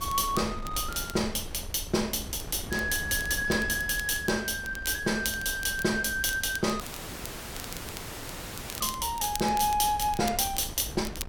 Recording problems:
wind on the microphone; below 260 Hz, SNR 14 dB
crackle; vinyl, SNR 15 dB
dropout; at 7 s for 2 s

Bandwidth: 17 kHz